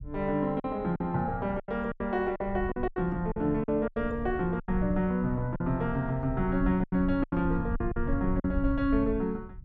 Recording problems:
rumble; below 86 Hz, SNR 9 dB
packet loss; 10% of the sound replaced, filled with silence

